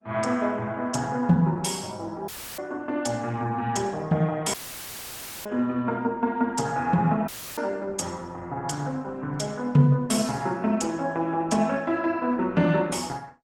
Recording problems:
codec artefacts; Opus, log-spectral distance 3 dB, nothing above 18.3 kHz
dropout; at 2.5 s, at 4.5 s for 1 s and at 7.5 s; filled with static

